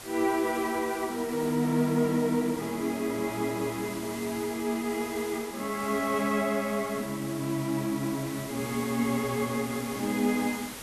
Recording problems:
hiss; slope -2 dB per octave, SNR 12 dB

